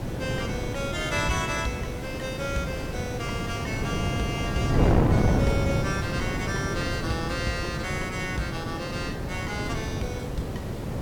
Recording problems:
hum; 60 Hz, harmonics up to 600 Hz, SNR 18 dB
background hiss; slope -5 dB per octave, SNR 10 dB
wind on the microphone; below 390 Hz, SNR -2 dB

